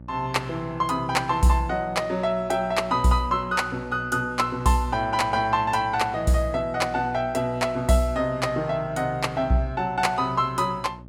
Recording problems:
hum; 60 Hz, harmonics up to 900 Hz, SNR 19 dB

